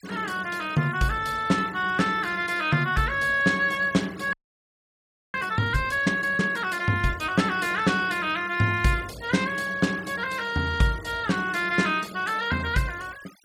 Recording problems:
noise reduction artefacts; signal-to-artefact ratio 21 dB
frozen audio; at 4.5 s for 1 s

